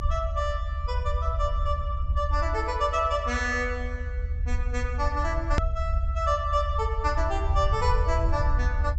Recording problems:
treble missing; nothing above 8 kHz
rumble; below 74 Hz, SNR 1 dB
edit click; at 5.5 s

